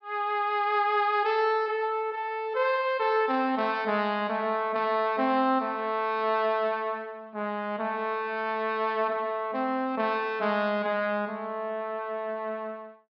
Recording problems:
low-pass filter; nothing above 5.5 kHz

